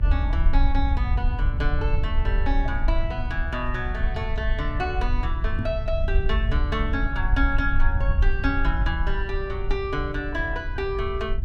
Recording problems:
hum; 60 Hz, harmonics up to 840 Hz, SNR 14 dB
low-frequency rumble; below 62 Hz, SNR -2 dB
microphone thump; at 5.5 s; peak +4 dB vs average level

